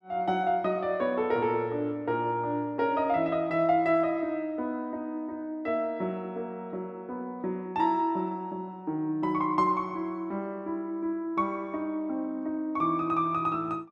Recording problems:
none

